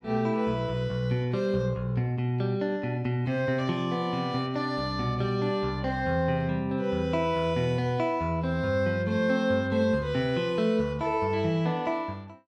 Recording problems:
none

